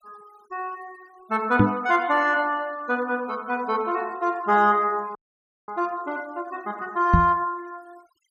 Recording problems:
denoising artefacts; signal-to-artefact ratio 28 dB
microphone thump; at 1.5 s and at 7 s; peak +9 dB vs average level
frozen audio; at 5 s for 0.5 s

